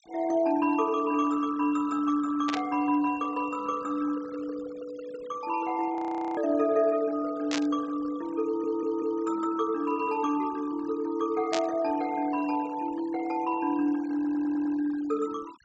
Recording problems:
treble cut off; nothing above 8 kHz
denoising artefacts; signal-to-artefact ratio 22 dB
burst of static; 4 times, first at 2.5 s; peak +1 dB vs average level
frozen audio; at 6 s
stutter; at 8.5 s and at 14 s

